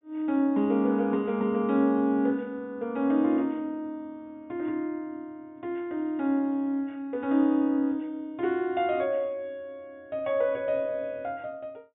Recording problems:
treble cut off; nothing above 4 kHz

